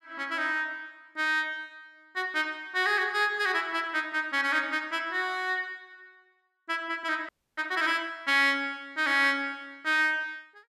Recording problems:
audio freezing; at 7.5 s

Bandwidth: 14.5 kHz